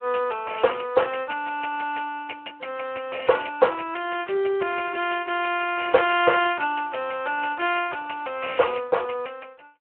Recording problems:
telephone audio; 320 Hz to 3.1 kHz, Speex

